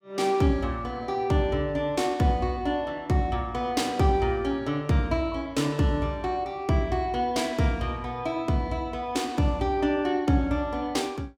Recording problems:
none

